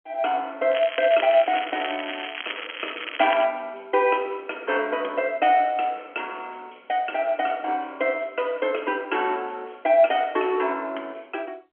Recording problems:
telephone audio; 240 Hz to 3.3 kHz, G.711
crackling; from 0.5 to 3.5 s; loose cable, SNR 9 dB

